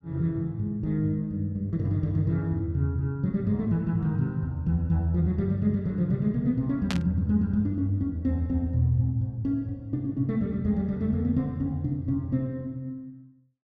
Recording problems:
static burst; at 7 s; peak -1 dB vs average level

